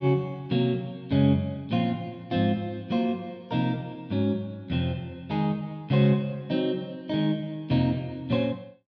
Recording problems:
none

